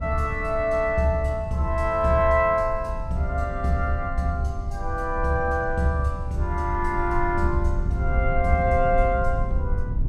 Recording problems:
rumble; below 74 Hz, SNR 7 dB

